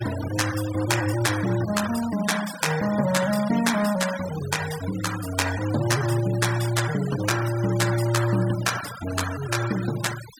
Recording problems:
noise reduction artefacts; signal-to-artefact ratio 12 dB

